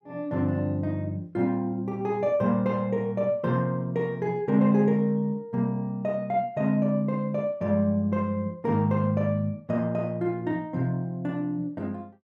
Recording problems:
none

